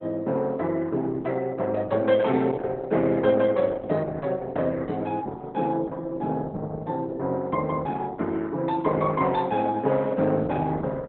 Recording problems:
lossy compression; Opus, log-spectral distance 3 dB, nothing above 3.6 kHz

